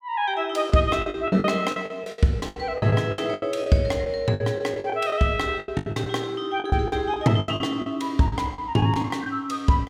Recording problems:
lost packets; 16% of the sound replaced, filled with the last packet

